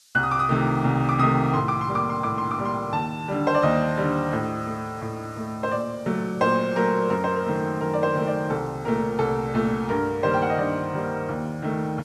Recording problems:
hiss; SNR 28 dB

